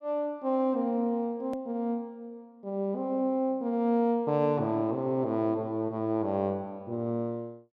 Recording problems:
click at an edit; at 1.5 s

